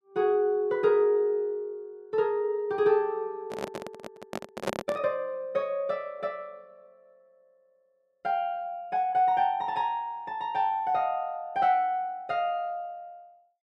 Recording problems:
microphone handling noise; from 3.5 to 5 s; peak +3 dB vs average level

